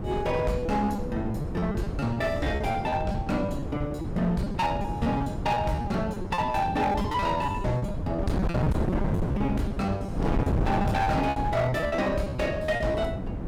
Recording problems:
distortion; hard clipping, signal-to-distortion ratio 12 dB
wind noise; below 330 Hz, SNR 3 dB
packet loss; 14% of the sound replaced, filled with repeated pitch periods

